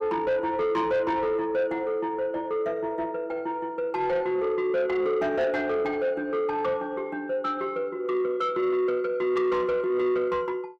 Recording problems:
distorted audio; soft clipping, signal-to-distortion ratio 11 dB

